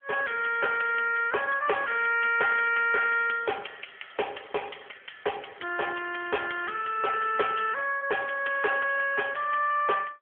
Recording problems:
phone line; 320 Hz to 3.3 kHz, AMR-NB

